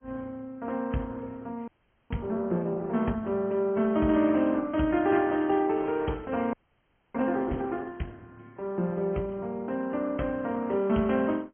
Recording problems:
low-pass filter; nothing above 3.2 kHz
codec artefacts; Opus, then AAC, log-spectral distance 3 dB
frozen audio; at 1.5 s and at 6.5 s for 0.5 s

